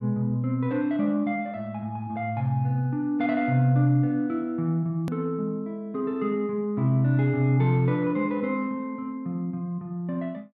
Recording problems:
click at an edit; at 5 s

